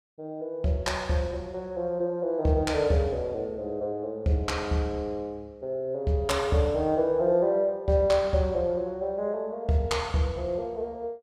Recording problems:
none

